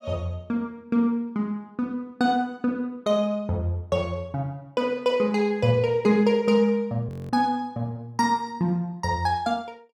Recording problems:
audio freezing; at 7 s

